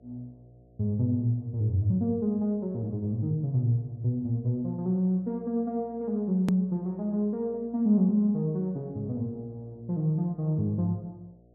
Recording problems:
electrical hum; 60 Hz, harmonics up to 720 Hz, SNR 30 dB
edit click; at 6.5 s

